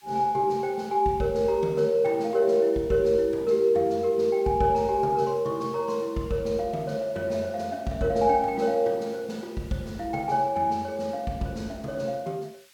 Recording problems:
hiss; SNR 29 dB

